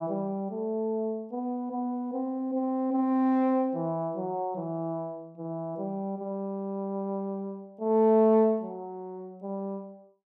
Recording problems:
none

